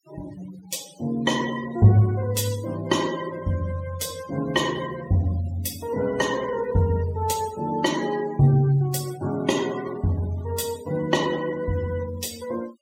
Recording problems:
denoising artefacts; signal-to-artefact ratio 17 dB

